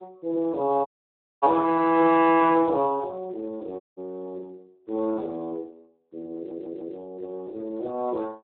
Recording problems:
phone line; 280 Hz to 3.6 kHz, Speex
dropout; at 1 s for 0.5 s and at 4 s
stutter; at 6.5 s

